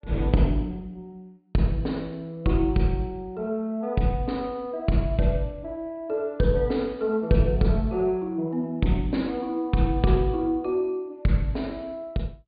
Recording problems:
low-pass filter; nothing above 4.7 kHz

